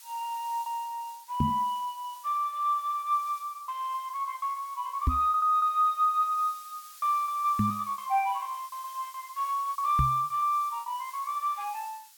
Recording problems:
hiss; SNR 20 dB
lost packets; 10% of the sound replaced, filled with repeated pitch periods
microphone thump; 4 times, first at 1.5 s; peak +6 dB vs average level

